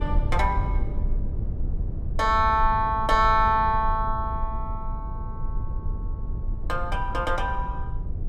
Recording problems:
low-frequency rumble; below 74 Hz, SNR 7 dB

